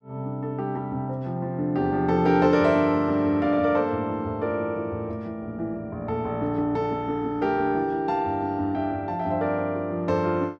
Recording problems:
none

